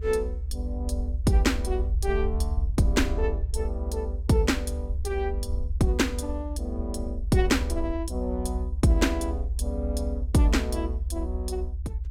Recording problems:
low-frequency rumble; below 70 Hz, SNR 3 dB

